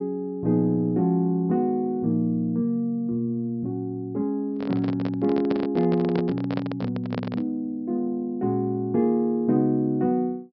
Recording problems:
low-pass filter; nothing above 5.5 kHz
microphone handling noise; from 4.5 to 7.5 s; peak -2 dB vs average level

